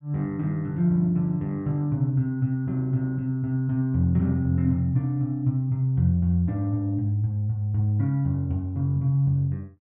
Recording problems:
none

